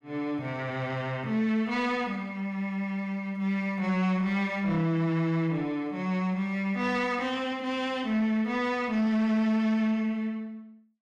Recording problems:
distorted audio; soft clipping, signal-to-distortion ratio 11 dB

